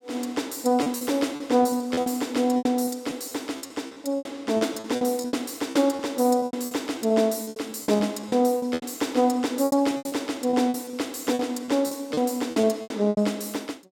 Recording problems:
packet loss; 16% of the sound replaced, filled with repeated pitch periods

